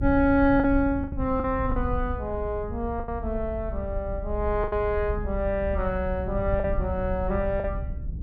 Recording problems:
low-frequency rumble; below 80 Hz, SNR 6 dB
lost packets; 6% of the sound replaced, filled with the last packet

